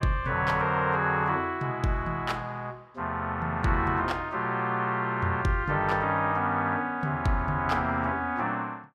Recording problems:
none

